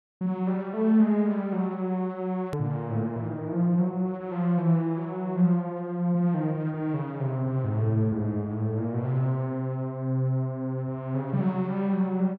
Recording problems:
treble missing; nothing above 7.1 kHz
click at an edit; at 2.5 s

